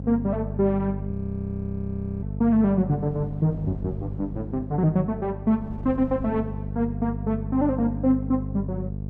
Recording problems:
hum; 50 Hz, harmonics up to 500 Hz, SNR 7 dB
wind on the microphone; below 220 Hz, SNR 21 dB
audio freezing; at 1 s for 1 s

